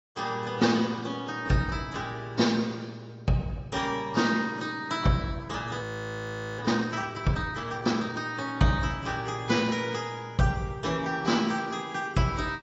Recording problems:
codec artefacts; AAC, log-spectral distance 3 dB, nothing above 7.6 kHz
audio freezing; at 6 s for 1 s

